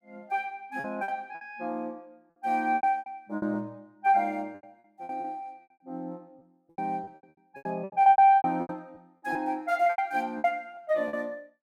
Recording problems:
packet loss; 15% of the sound replaced, filled with repeated pitch periods

